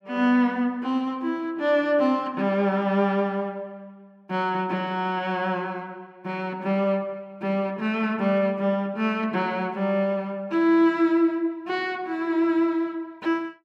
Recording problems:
none

